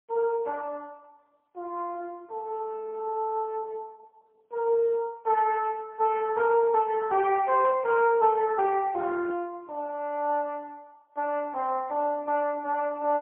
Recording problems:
telephone audio; 340 Hz to 3.1 kHz, AMR-NB, then MP3

